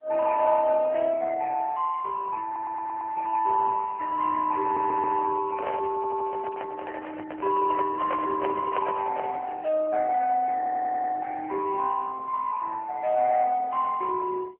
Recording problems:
telephone audio; 340 Hz to 2 kHz, AMR-NB
stutter; 4 times, first at 2.5 s
handling noise; from 5.5 to 9.5 s; peak -2 dB vs average level

